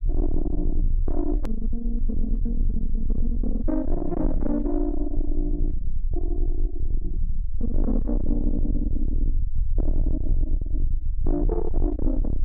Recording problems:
distorted audio; soft clipping, signal-to-distortion ratio 8 dB
rumble; below 38 Hz, strongest tone 18 Hz, SNR -1 dB
click at an edit; at 1.5 s

